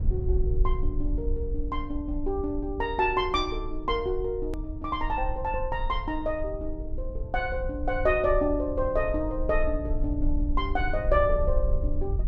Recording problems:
low-frequency rumble; below 58 Hz, strongest tone 24 Hz, SNR 4 dB
hard cut with a click; at 4.5 s

